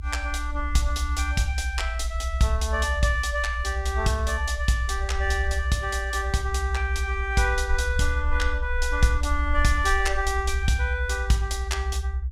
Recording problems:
low-frequency rumble; below 68 Hz, SNR 2 dB

